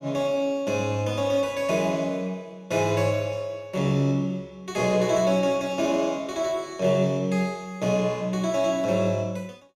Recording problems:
none

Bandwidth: 15.5 kHz